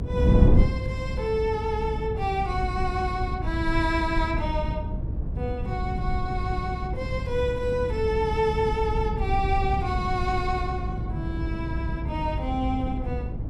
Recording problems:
electrical hum; 50 Hz, harmonics up to 350 Hz, SNR 10 dB
low-frequency rumble; below 66 Hz, SNR 6 dB
wind on the microphone; below 200 Hz, SNR 3 dB

